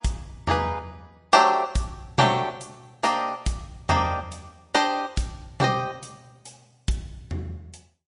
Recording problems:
lossy compression; MP3, log-spectral distance 3 dB, nothing above 10.4 kHz

